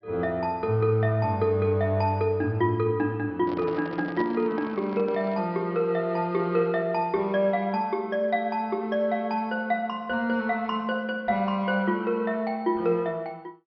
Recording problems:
treble cut off; nothing above 5.5 kHz
handling noise; from 3.5 to 5.5 s; peak -6 dB vs average level

